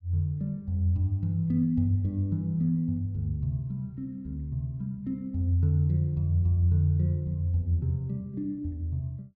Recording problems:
none

